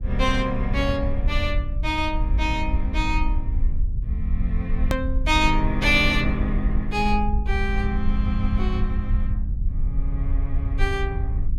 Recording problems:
low-frequency rumble; below 64 Hz, SNR 1 dB
click at an edit; at 5 s

